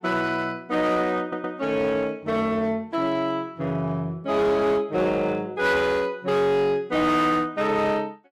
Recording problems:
distorted audio; hard clipping, uneven, signal-to-distortion ratio 11 dB
stutter; at 1 s

